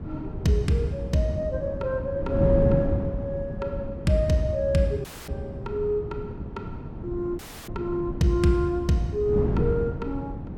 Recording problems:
wind noise; below 250 Hz, SNR 5 dB
audio cutting out; at 5 s and at 7.5 s

